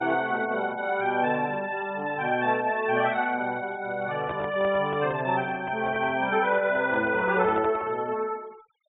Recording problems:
treble cut off; nothing above 4 kHz
denoising artefacts; signal-to-artefact ratio 24 dB
handling noise; from 4 to 8 s; peak -5 dB vs average level

